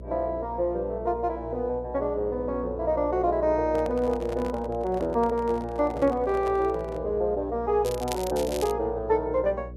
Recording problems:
mains hum; 60 Hz, harmonics up to 600 Hz, SNR 14 dB
handling noise; from 3.5 to 7 s; peak -8 dB vs average level
crackle; at 8 s; loose cable, SNR 13 dB

